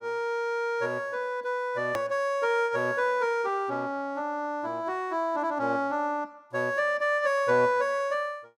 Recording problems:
click at an edit; at 2 s

